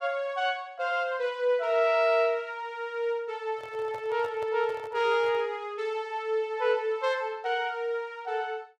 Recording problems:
microphone handling noise; from 3.5 to 5.5 s; peak -12 dB vs average level

